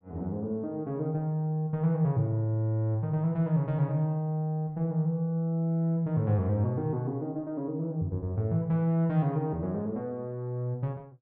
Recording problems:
none

